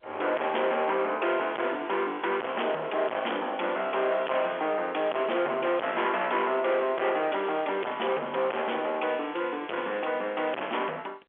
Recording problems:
telephone audio; 370 Hz to 3.3 kHz, G.711
distorted audio; hard clipping, signal-to-distortion ratio 4 dB

